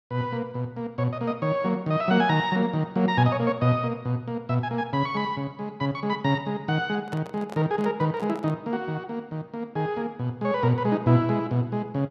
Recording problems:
microphone handling noise; from 7 to 8.5 s; peak -7 dB vs average level

